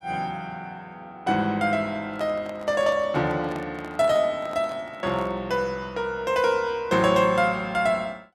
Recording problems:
microphone handling noise; from 2 to 5.5 s; peak -10 dB vs average level

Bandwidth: 14 kHz